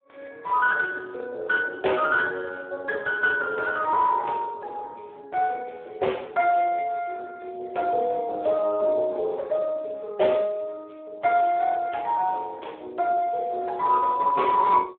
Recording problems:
telephone audio; 320 Hz to 3 kHz, Speex

